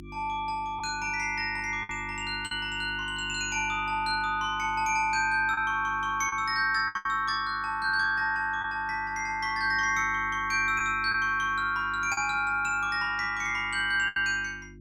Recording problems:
hum; 50 Hz, harmonics up to 350 Hz, SNR 19 dB
lost packets; 3% of the sound replaced, filled with the last packet

